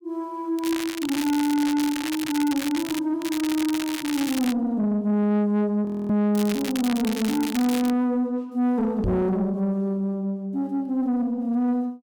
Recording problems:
distorted audio; soft clipping, signal-to-distortion ratio 11 dB
crackle; from 0.5 to 3 s, from 3 to 4.5 s and from 6.5 to 8 s; loose cable, SNR 9 dB
audio freezing; at 6 s
microphone bump; at 9 s; peak +1 dB vs average level

